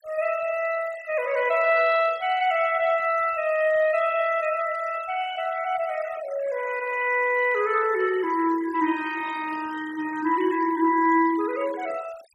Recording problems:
denoising artefacts; signal-to-artefact ratio 18 dB

